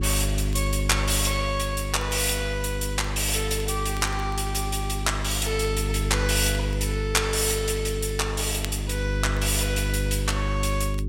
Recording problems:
hum; 50 Hz, harmonics up to 400 Hz, SNR 3 dB
crackle; vinyl, SNR 23 dB

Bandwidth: 16.5 kHz